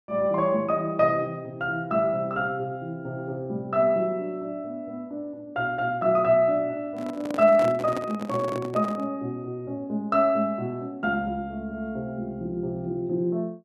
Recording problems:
microphone handling noise; from 7 to 9 s; peak -2 dB vs average level

